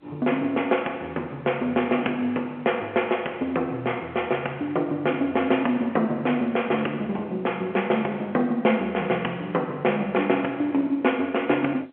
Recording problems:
phone line; 300 Hz to 3.2 kHz, G.711

